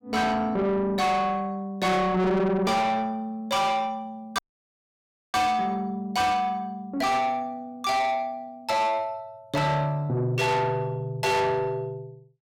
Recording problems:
distorted audio; soft clipping, signal-to-distortion ratio 7 dB
audio cutting out; at 4.5 s for 1 s

